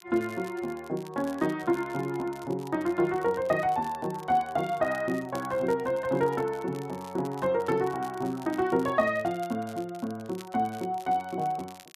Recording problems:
crackling; vinyl, SNR 23 dB

